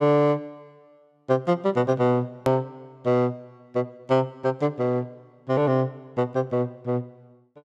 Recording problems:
edit click; at 2.5 s

